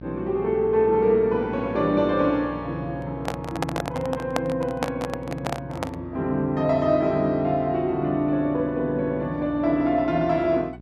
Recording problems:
mains hum; 60 Hz, harmonics up to 1 kHz, SNR 16 dB
handling noise; from 3 to 6 s; peak +3 dB vs average level

